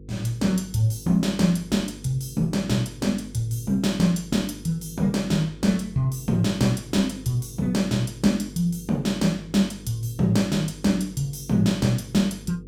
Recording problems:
hum; 50 Hz, harmonics up to 500 Hz, SNR 19 dB

